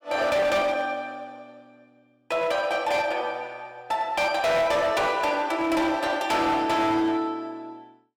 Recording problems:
distorted audio; hard clipping, signal-to-distortion ratio 11 dB

